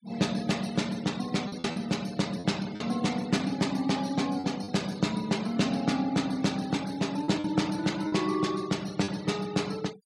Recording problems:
noise reduction artefacts; signal-to-artefact ratio 18 dB
packet loss; 4% of the sound replaced, filled with repeated pitch periods

